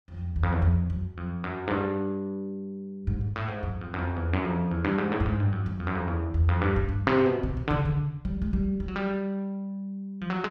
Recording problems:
none

